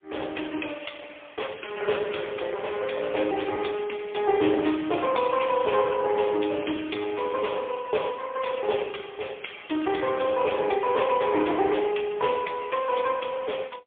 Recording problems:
telephone audio; 280 Hz to 3.5 kHz, AMR-NB, then MP3

